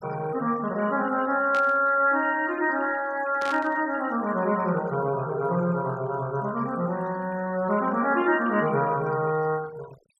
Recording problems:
noise reduction artefacts; signal-to-artefact ratio 20 dB
static burst; at 1.5 s and at 3.5 s; peak -8 dB vs average level

